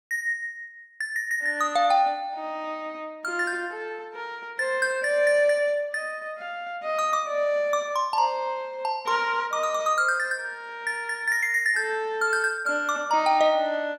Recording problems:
none

